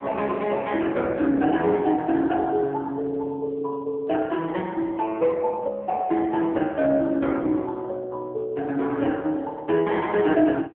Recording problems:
telephone audio; 150 Hz to 3.5 kHz, AMR-NB

